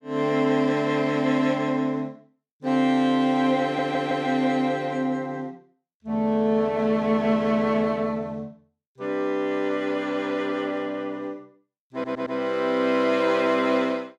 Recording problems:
audio stuttering; at 3.5 s and at 12 s

